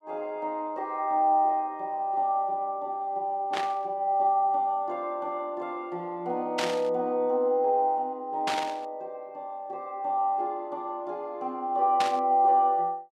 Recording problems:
static burst; 4 times, first at 3.5 s; peak +1 dB vs average level

